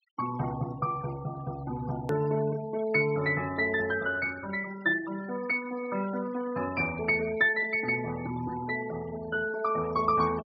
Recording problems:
treble missing; nothing above 5.8 kHz
noise reduction artefacts; signal-to-artefact ratio 15 dB
edit click; at 2 s

